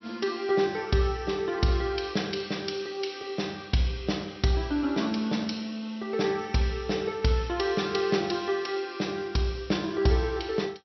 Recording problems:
treble missing; nothing above 5.8 kHz

